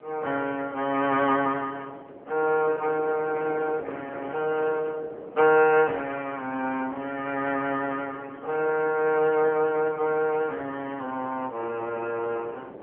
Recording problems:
telephone audio; 320 Hz to 3 kHz, AMR-NB
wind on the microphone; below 640 Hz, SNR 17 dB

